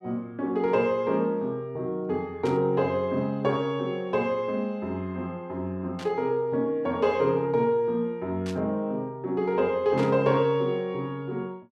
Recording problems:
burst of static; 4 times, first at 2.5 s; peak -9 dB vs average level

